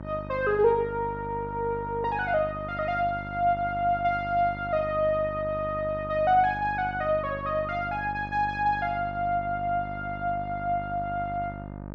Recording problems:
mains hum; 50 Hz, harmonics up to 1.6 kHz, SNR 12 dB

